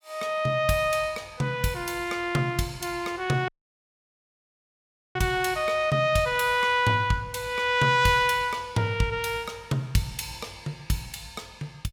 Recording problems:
dropout; at 3.5 s for 1.5 s

